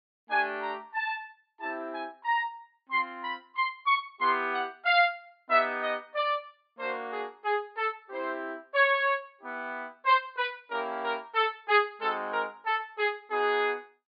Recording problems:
treble cut off; nothing above 4.9 kHz

